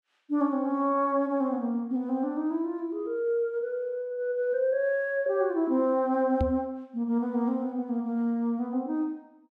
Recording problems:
microphone thump; at 6.5 s; peak +5 dB vs average level

